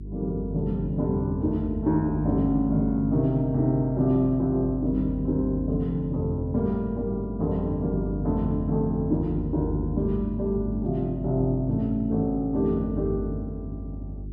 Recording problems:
hum; 50 Hz, harmonics up to 400 Hz, SNR 9 dB

